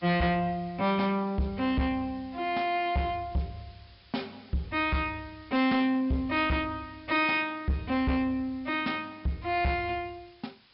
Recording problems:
treble cut off; nothing above 5.3 kHz
distortion; soft clipping, signal-to-distortion ratio 11 dB
background hiss; SNR 28 dB

